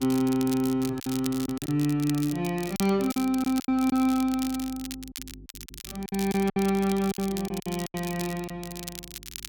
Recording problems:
hum; 50 Hz, harmonics up to 400 Hz, SNR 24 dB
crackling; vinyl, SNR 13 dB
lost packets; 9% of the sound replaced, filled with silence

